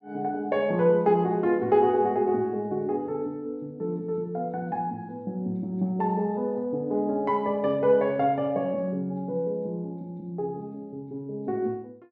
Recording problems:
none

